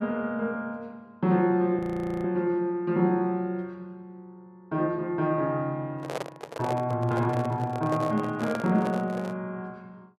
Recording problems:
audio freezing; at 2 s
handling noise; from 6 to 9.5 s; peak -1 dB vs average level

